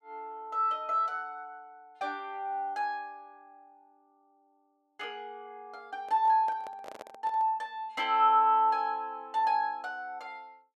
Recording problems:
microphone handling noise; from 6 to 7.5 s; peak -11 dB vs average level

